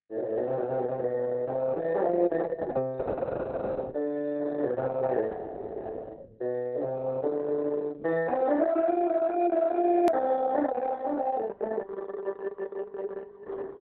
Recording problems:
lossy compression; Opus, log-spectral distance 3 dB, nothing above 13.1 kHz
click at an edit; at 10 s

